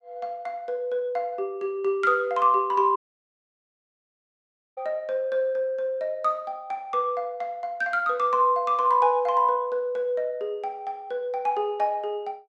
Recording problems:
dropout; at 3 s for 2 s

